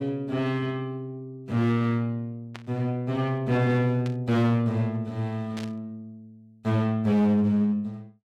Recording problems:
distortion; hard clipping, uneven, signal-to-distortion ratio 10 dB
static burst; at 2.5 s, at 4 s and at 5.5 s; peak -10 dB vs average level

